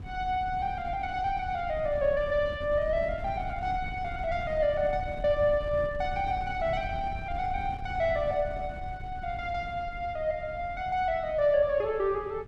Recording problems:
wind on the microphone; below 120 Hz, SNR 12 dB

